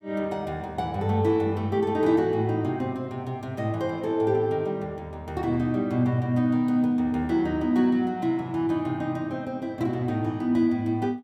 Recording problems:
none

